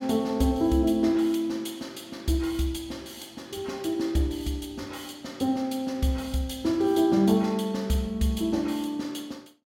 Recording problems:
none

